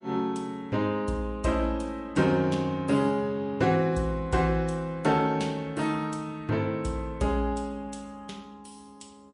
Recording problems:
lossy compression; MP3, log-spectral distance 2 dB, nothing above 10.4 kHz

